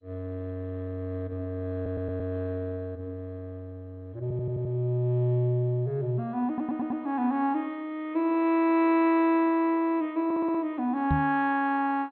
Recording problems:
lossy codec; MP2, log-spectral distance 2 dB, nothing above 3.7 kHz
audio stuttering; 4 times, first at 2 s
microphone thump; at 11 s; peak +4 dB vs average level

